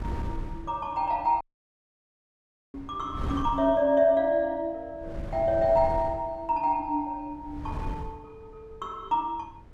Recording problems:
wind noise; below 160 Hz, SNR 12 dB
dropout; at 1.5 s for 1.5 s

